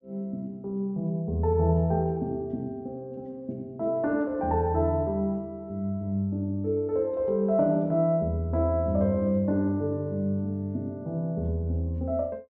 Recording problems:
none

